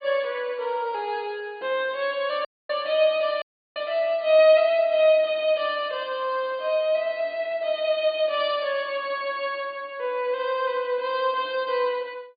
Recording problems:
treble missing; nothing above 4.7 kHz
audio cutting out; at 2.5 s and at 3.5 s

